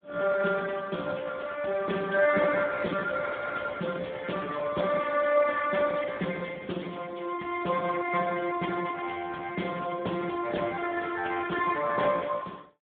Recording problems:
telephone audio; 190 Hz to 2 kHz, Speex

